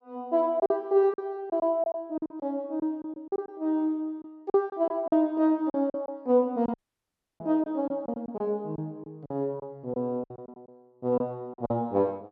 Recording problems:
packet loss; 12% of the sound replaced, filled with silence
dropout; at 7 s for 0.5 s

